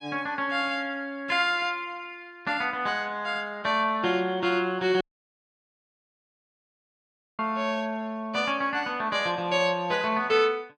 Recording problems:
audio cutting out; at 5 s for 2.5 s

